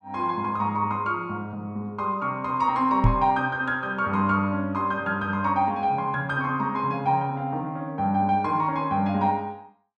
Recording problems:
microphone bump; at 3 s; peak +8 dB vs average level

